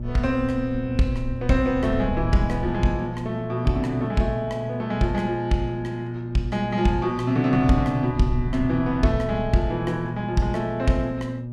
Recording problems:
hum; 60 Hz, harmonics up to 600 Hz, SNR 8 dB
wind on the microphone; below 78 Hz, SNR 11 dB

